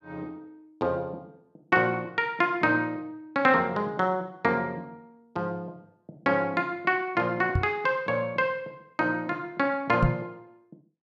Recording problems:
microphone bump; at 7.5 s and at 10 s; peak +6 dB vs average level

